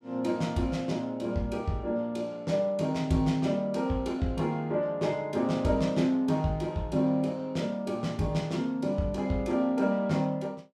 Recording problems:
none

